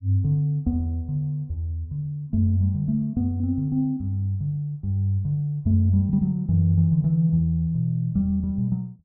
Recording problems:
none

